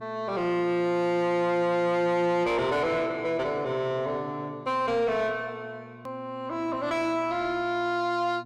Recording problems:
distorted audio; soft clipping, signal-to-distortion ratio 10 dB
electrical hum; 60 Hz, harmonics up to 720 Hz, SNR 21 dB
edit click; at 6 s

